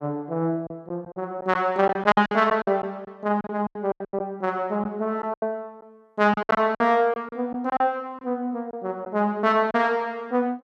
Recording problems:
lost packets; 11% of the sound replaced, filled with silence

